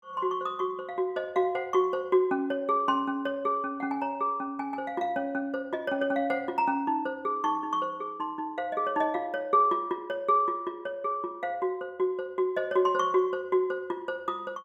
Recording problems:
none

